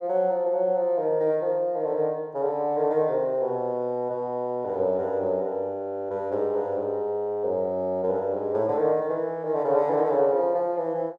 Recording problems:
none

